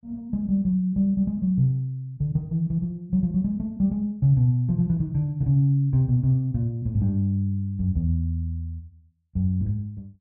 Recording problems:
none

